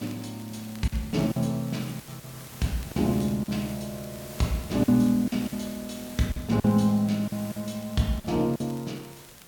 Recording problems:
hiss; slope -2 dB per octave, SNR 16 dB
crackle; vinyl, SNR 27 dB
packet loss; 7% of the sound replaced, filled with silence

